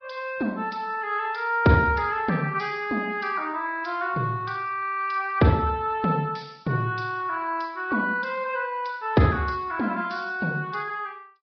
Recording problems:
treble missing; nothing above 5.5 kHz
lossy codec; Vorbis, log-spectral distance 3 dB

